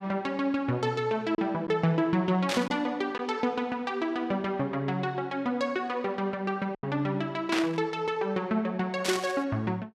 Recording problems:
packet loss; 1.5% of the sound replaced, filled with silence
burst of static; at 2.5 s, at 7.5 s and at 9 s; peak +3 dB vs average level

